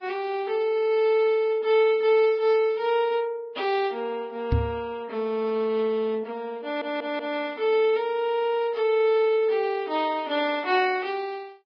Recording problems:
lossy codec; Vorbis, log-spectral distance 2 dB, nothing above 10.7 kHz
microphone thump; at 4.5 s; peak +4 dB vs average level
audio stuttering; at 6.5 s

